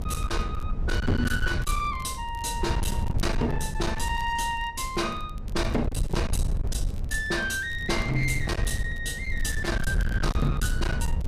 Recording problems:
distortion; hard clipping, signal-to-distortion ratio 8 dB
wind noise; below 100 Hz, SNR 2 dB
crackling; vinyl, SNR 25 dB

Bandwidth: 14.5 kHz